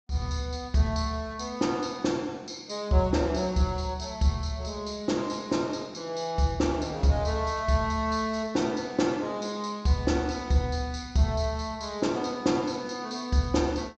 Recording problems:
treble missing; nothing above 8 kHz

